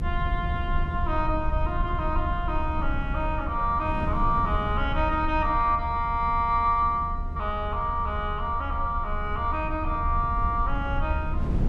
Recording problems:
low-frequency rumble; below 74 Hz, strongest tone 26 Hz, SNR 5 dB
wind on the microphone; below 200 Hz, SNR 11 dB

